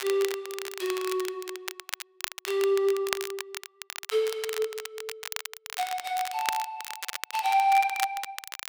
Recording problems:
crackling; vinyl, SNR 8 dB

